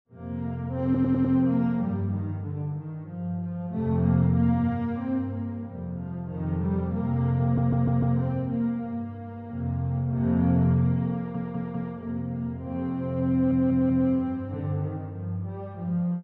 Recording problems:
stutter; 4 times, first at 1 s

